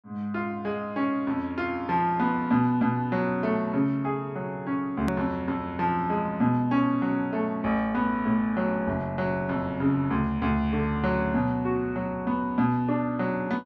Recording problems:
hard cut with a click; at 5 s

